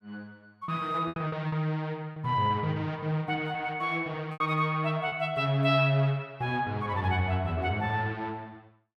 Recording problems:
lost packets; 4% of the sound replaced, filled with repeated pitch periods

